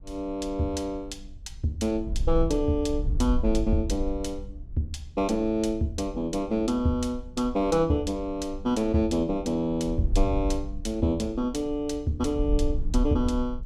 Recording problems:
wind on the microphone; below 56 Hz, SNR 7 dB

